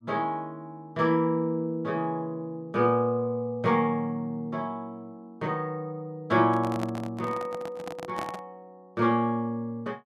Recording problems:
microphone handling noise; from 6.5 to 8.5 s; peak -3 dB vs average level

